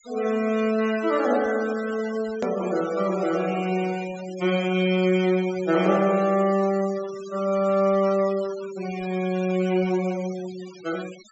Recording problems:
low-pass filter; nothing above 7.7 kHz
denoising artefacts; signal-to-artefact ratio 17 dB
click at an edit; at 2.5 s

